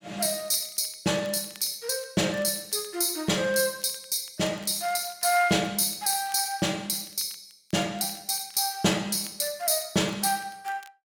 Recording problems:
crackle; vinyl, SNR 26 dB

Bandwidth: 17 kHz